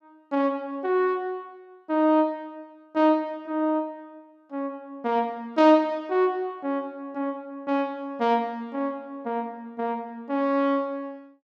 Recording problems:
none

